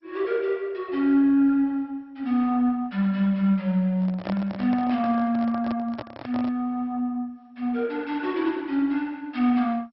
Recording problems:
lossy codec; MP2, log-spectral distance 2 dB, nothing above 5.5 kHz
handling noise; from 4 to 6.5 s; peak -4 dB vs average level

